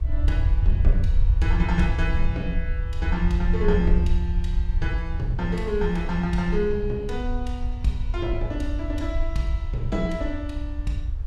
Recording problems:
rumble; below 72 Hz, SNR -1 dB
wind noise; below 1.2 kHz, SNR 25 dB

